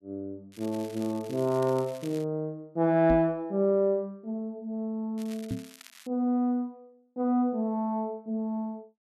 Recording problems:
crackle; from 0.5 to 2 s and at 5 s; loose cable, SNR 21 dB
knock on the microphone; at 3 s and at 5.5 s; peak 0 dB vs average level

